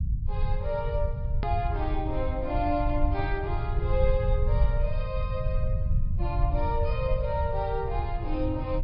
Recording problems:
low-pass filter; nothing above 5.5 kHz
rumble; below 90 Hz, SNR -2 dB
click at an edit; at 1.5 s

